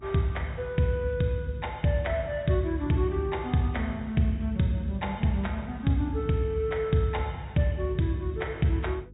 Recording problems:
treble cut off; nothing above 4 kHz
hum; 50 Hz, harmonics up to 400 Hz, SNR 21 dB

